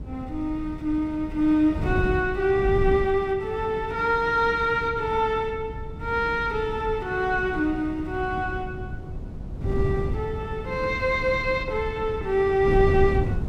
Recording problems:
wind on the microphone; below 160 Hz, SNR 8 dB

